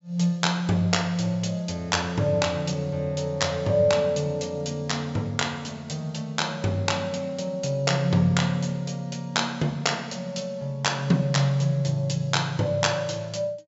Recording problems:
low-pass filter; nothing above 8 kHz

